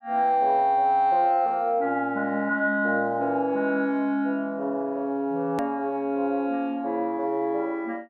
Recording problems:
edit click; at 5.5 s

